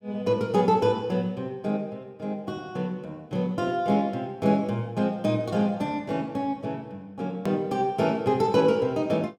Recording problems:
click at an edit; at 7.5 s

